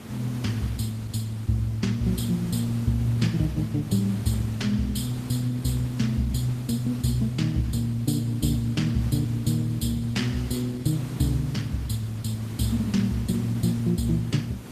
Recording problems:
codec artefacts; Opus, log-spectral distance 3 dB, nothing above 14.7 kHz
hiss; slope -5 dB per octave, SNR 14 dB

